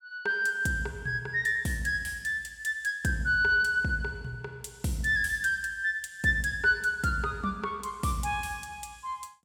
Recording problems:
none

